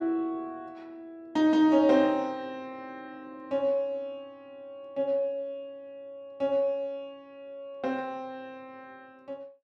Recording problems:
none

